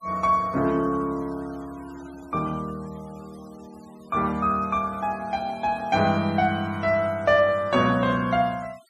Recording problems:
noise reduction artefacts; signal-to-artefact ratio 26 dB

